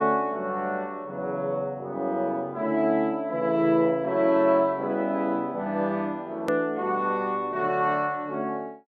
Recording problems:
hard cut with a click; at 6.5 s

